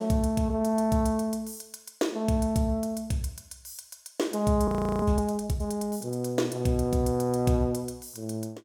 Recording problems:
frozen audio; at 4.5 s

